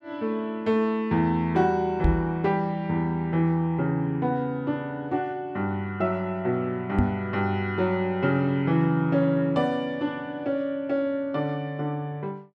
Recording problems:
microphone thump; at 2 s and at 7 s; peak +7 dB vs average level

